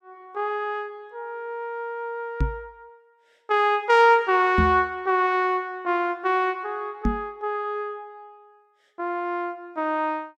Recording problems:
microphone bump; at 2.5 s, at 4.5 s and at 7 s; peak +4 dB vs average level

